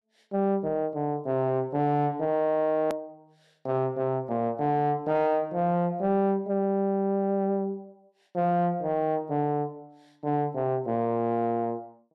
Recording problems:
distortion; soft clipping, signal-to-distortion ratio 11 dB
edit click; at 3 s

